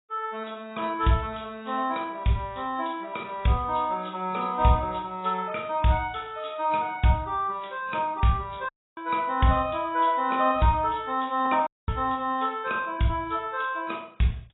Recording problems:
lossy compression; AAC, log-spectral distance 4 dB, nothing above 3.8 kHz
dropout; at 8.5 s and at 12 s

